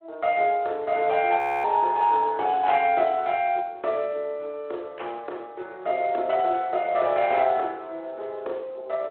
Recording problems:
telephone audio; 320 Hz to 4 kHz, Speex
audio freezing; at 1.5 s

